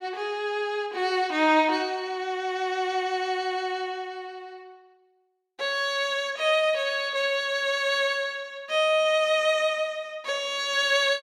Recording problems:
none

